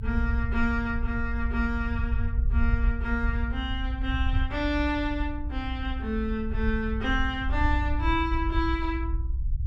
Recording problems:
rumble; below 66 Hz, SNR 0 dB

